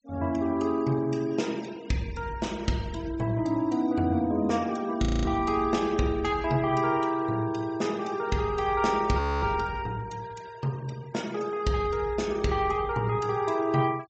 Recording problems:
low-pass filter; nothing above 8 kHz
noise reduction artefacts; signal-to-artefact ratio 22 dB
audio freezing; at 5 s and at 9 s

